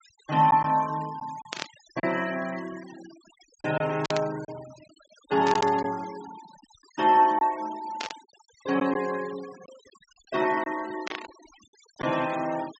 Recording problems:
low-pass filter; nothing above 8 kHz
denoising artefacts; signal-to-artefact ratio 19 dB
packet loss; 4% of the sound replaced, filled with silence
burst of static; 5 times, first at 1.5 s; peak -1 dB vs average level

